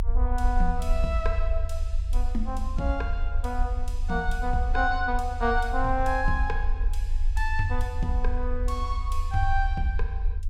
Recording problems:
low-frequency rumble; below 50 Hz, strongest tone 24 Hz, SNR 1 dB

